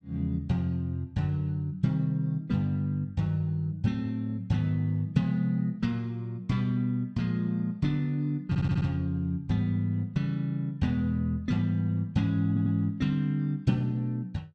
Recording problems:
audio stuttering; at 8.5 s and at 12 s

